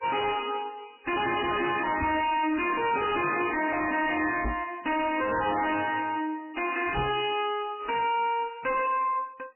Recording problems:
lossy codec; MP3, log-spectral distance 7 dB, nothing above 2.6 kHz
distorted audio; soft clipping, signal-to-distortion ratio 5 dB
knock on the microphone; at 2 s, at 4.5 s and at 7 s; peak +3 dB vs average level

